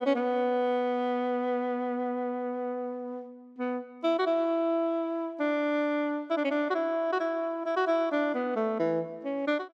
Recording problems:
none

